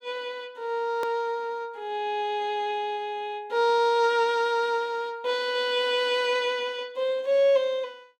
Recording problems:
click at an edit; at 1 s

